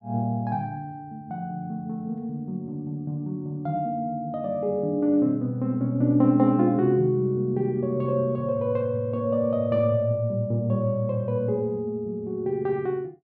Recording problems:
none

